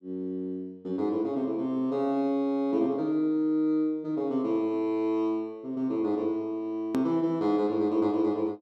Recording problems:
edit click; at 7 s

